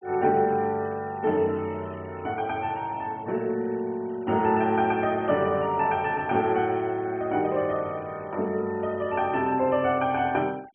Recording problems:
low-pass filter; nothing above 3.2 kHz
noise reduction artefacts; signal-to-artefact ratio 27 dB

